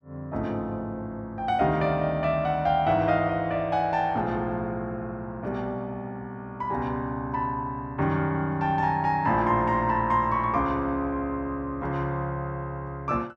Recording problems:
none

